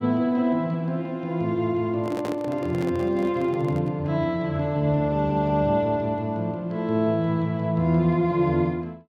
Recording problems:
microphone handling noise; from 2 to 4 s; peak -5 dB vs average level

